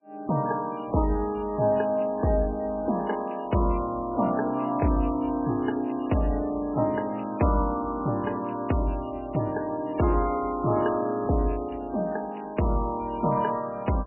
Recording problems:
codec artefacts; MP3, log-spectral distance 5 dB, nothing above 2.9 kHz

